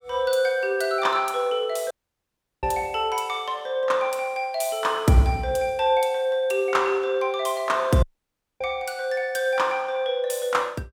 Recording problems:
dropout; at 2 s for 0.5 s and at 8 s for 0.5 s

